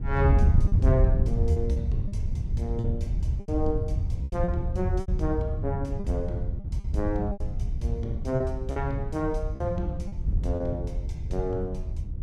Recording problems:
wind on the microphone; below 96 Hz, SNR -3 dB
lost packets; 7% of the sound replaced, filled with repeated pitch periods

